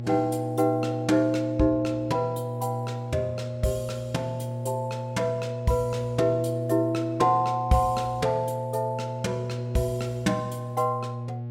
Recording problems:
electrical hum; 60 Hz, harmonics up to 600 Hz, SNR 7 dB

